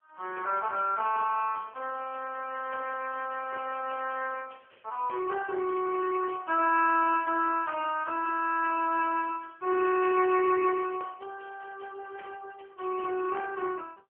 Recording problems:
phone line; 280 Hz to 3.2 kHz, AMR-NB

